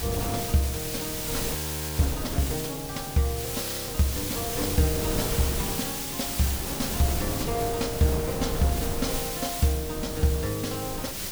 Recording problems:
hiss; slope +3 dB per octave, SNR 2 dB
wind on the microphone; below 460 Hz, SNR 6 dB
frozen audio; at 1.5 s and at 3.5 s

